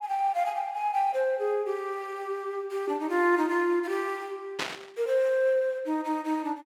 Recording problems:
burst of static; at 4.5 s; peak +1 dB vs average level

